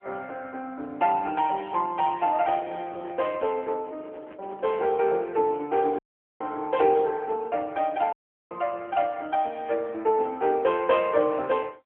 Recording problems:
phone line; 280 Hz to 3.2 kHz, AMR-NB
microphone handling noise; from 2.5 to 5 s; peak -10 dB vs average level
dropout; at 6 s and at 8 s

